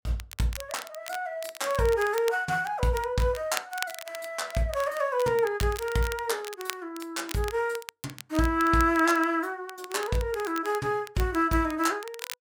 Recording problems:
crackle; vinyl, SNR 14 dB

